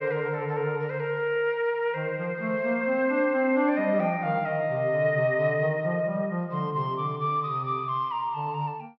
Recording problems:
treble cut off; nothing above 5.6 kHz

